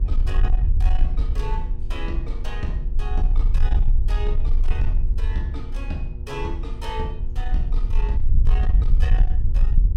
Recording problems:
distorted audio; soft clipping, signal-to-distortion ratio 12 dB
electrical hum; 60 Hz, harmonics up to 960 Hz, SNR 11 dB
low-frequency rumble; below 48 Hz, strongest tone 24 Hz, SNR -10 dB

